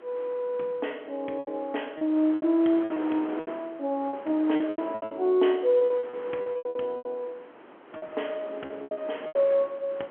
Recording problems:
telephone audio; 280 Hz to 3.6 kHz, G.711
wind on the microphone; below 1.3 kHz, SNR 17 dB
lost packets; 14% of the sound replaced, filled with repeated pitch periods

